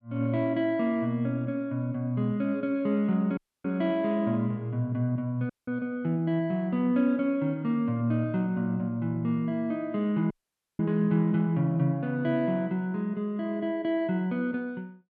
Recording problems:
audio cutting out; at 3.5 s, at 5.5 s and at 10 s

